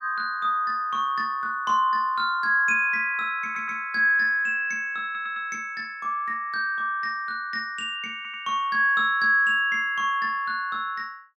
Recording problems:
stutter; at 3.5 s, at 5 s and at 8 s

